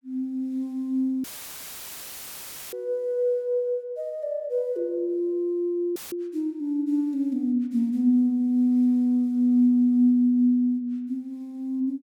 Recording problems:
audio cutting out; at 1 s for 1.5 s and at 6 s; filled with static

